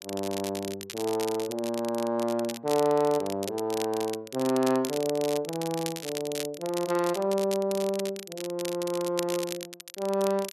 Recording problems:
crackling; vinyl, SNR 10 dB

